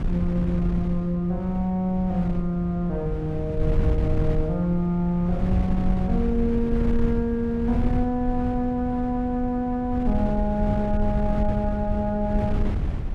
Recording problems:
mains hum; 50 Hz, harmonics up to 650 Hz, SNR 21 dB
wind on the microphone; below 110 Hz, SNR 4 dB

